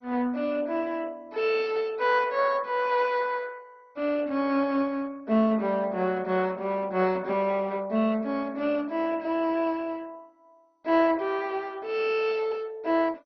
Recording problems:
codec artefacts; MP2, log-spectral distance 3 dB

